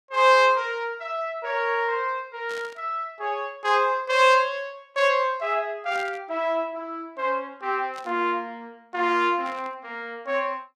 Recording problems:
static burst; 4 times, first at 2.5 s; peak -13 dB vs average level

